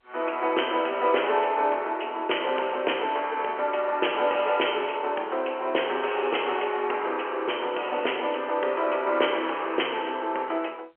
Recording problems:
phone line; 340 Hz to 3.2 kHz, G.711

